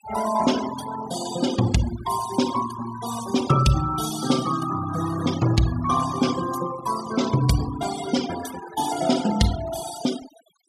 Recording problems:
noise reduction artefacts; signal-to-artefact ratio 10 dB

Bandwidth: 14.5 kHz